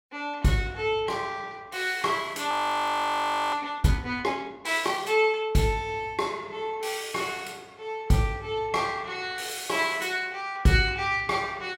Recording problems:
audio freezing; at 2.5 s for 1 s

